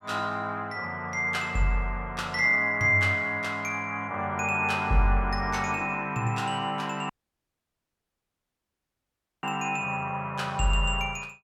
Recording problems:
dropout; at 7 s for 2.5 s

